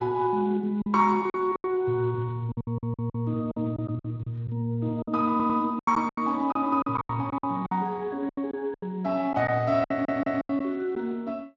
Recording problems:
lossy compression; Speex, log-spectral distance 2 dB, nothing above 6.9 kHz
packet loss; 12% of the sound replaced, filled with silence
audio stuttering; at 2.5 s, at 5.5 s and at 10 s

